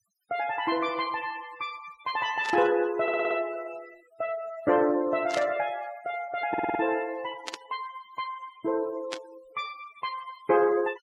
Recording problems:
denoising artefacts; signal-to-artefact ratio 18 dB
burst of static; 4 times, first at 2.5 s; peak -2 dB vs average level
stutter; at 3 s and at 6.5 s

